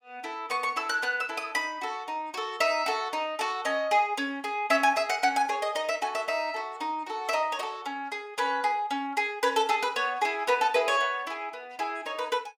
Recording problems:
none

